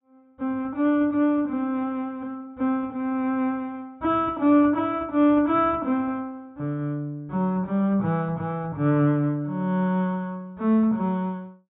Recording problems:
low-pass filter; nothing above 4 kHz

